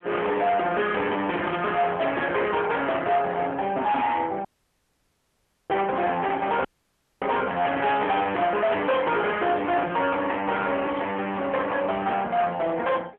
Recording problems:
telephone audio; 300 Hz to 3.4 kHz, AMR-NB
distorted audio; hard clipping, signal-to-distortion ratio 8 dB
static burst; 5 times, first at 1.5 s; peak -10 dB vs average level
audio cutting out; at 4.5 s for 1.5 s and at 6.5 s for 0.5 s

